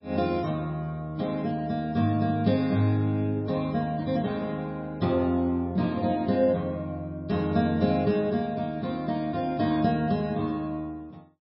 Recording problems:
lossy codec; MP3, log-spectral distance 2 dB, nothing above 5.2 kHz

